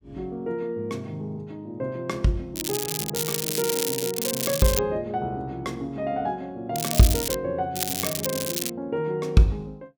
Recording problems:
crackling; from 2.5 to 5 s, at 7 s and at 7.5 s; loose cable, SNR 1 dB

